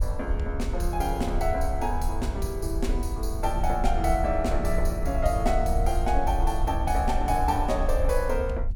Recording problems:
low-frequency rumble; below 62 Hz, SNR 2 dB

